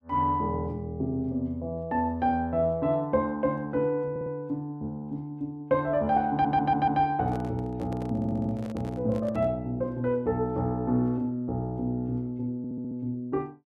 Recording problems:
stutter; 4 times, first at 4 s
handling noise; from 7 to 9.5 s; peak -10 dB vs average level

